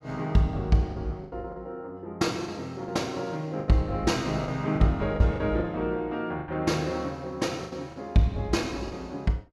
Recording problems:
packet loss; 9% of the sound replaced, filled with the last packet

